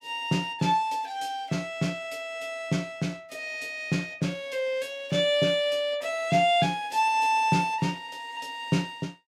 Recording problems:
none

